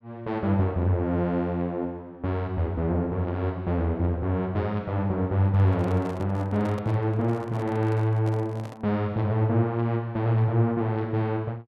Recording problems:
handling noise; from 5.5 to 9 s; peak -10 dB vs average level

